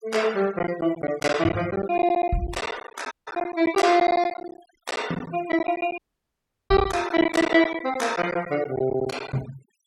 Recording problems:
denoising artefacts; signal-to-artefact ratio 20 dB
packet loss; 12% of the sound replaced, filled with silence
audio cutting out; at 3 s and at 6 s for 0.5 s

